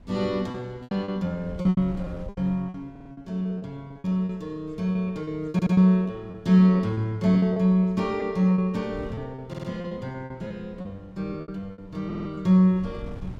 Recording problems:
wind on the microphone; below 160 Hz, SNR 22 dB
lost packets; 13% of the sound replaced, filled with repeated pitch periods
stutter; 4 times, first at 3 s

